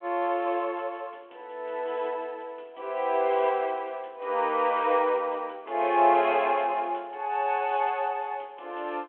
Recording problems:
phone line; 300 Hz to 3.4 kHz, G.726

